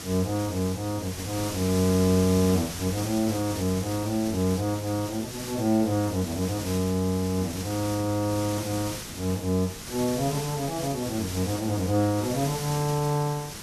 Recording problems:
background hiss; SNR 9 dB

